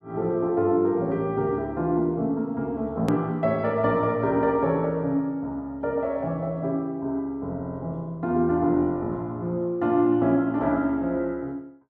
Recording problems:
hard cut with a click; at 3 s

